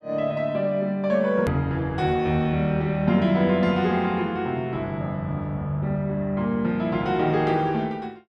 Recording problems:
edit click; at 1.5 s

